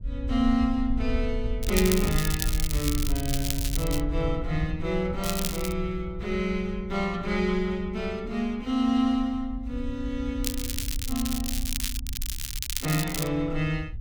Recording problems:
wind on the microphone; below 66 Hz, SNR 7 dB
crackle; from 1.5 to 4 s, at 5 s and from 10 to 13 s; loose cable, SNR 4 dB

